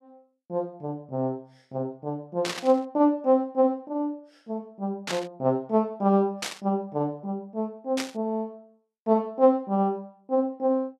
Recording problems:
static burst; 4 times, first at 2.5 s; peak 0 dB vs average level

